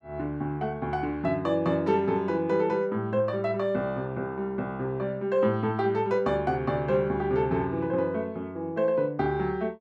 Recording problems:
none

